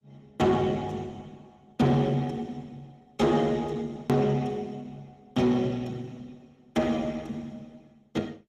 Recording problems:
lossy codec; Opus, log-spectral distance 3 dB, nothing above 15.1 kHz
distortion; soft clipping, signal-to-distortion ratio 11 dB
edit click; at 4 s

